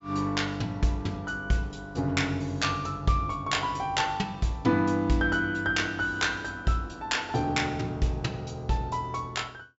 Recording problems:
treble missing; nothing above 8 kHz

